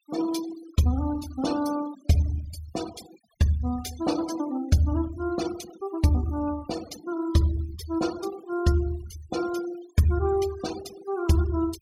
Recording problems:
noise reduction artefacts; signal-to-artefact ratio 15 dB

